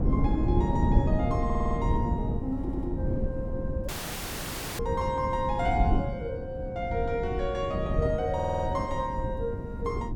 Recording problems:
wind on the microphone; below 200 Hz, SNR -1 dB
stutter; at 1.5 s, at 2.5 s and at 8.5 s
dropout; at 4 s for 1 s

